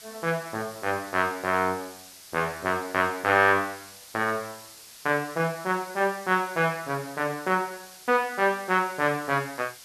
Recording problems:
background hiss; slope +2 dB per octave, SNR 18 dB

